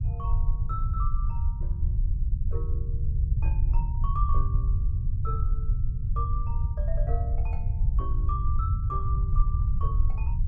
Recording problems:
low-frequency rumble; below 80 Hz, SNR -11 dB

